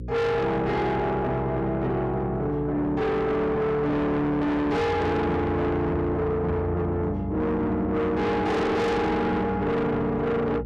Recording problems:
distortion; soft clipping, signal-to-distortion ratio 6 dB
electrical hum; 60 Hz, harmonics up to 540 Hz, SNR 12 dB

